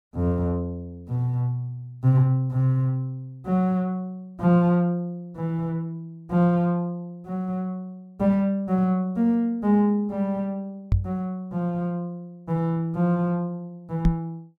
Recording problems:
microphone thump; at 11 s and at 14 s; peak +6 dB vs average level

